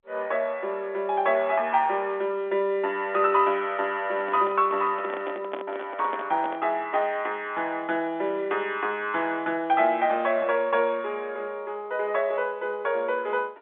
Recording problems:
phone line; 280 Hz to 3.6 kHz, G.711
microphone handling noise; from 4 to 6.5 s; peak -4 dB vs average level

